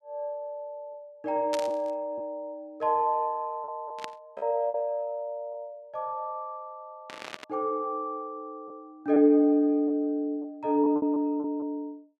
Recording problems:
packet loss; 4% of the sound replaced, filled with repeated pitch periods
static burst; at 1.5 s, at 4 s and at 7 s; peak -3 dB vs average level

